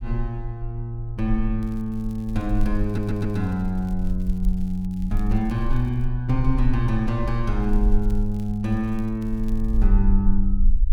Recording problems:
low-frequency rumble; below 40 Hz, strongest tone 18 Hz, SNR 3 dB
crackling; from 1.5 to 6 s and from 7.5 to 10 s; loose cable, SNR 29 dB
stutter; at 3 s

